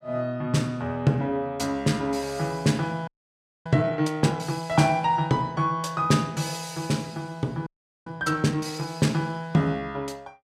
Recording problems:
audio freezing; at 3 s for 0.5 s and at 7.5 s

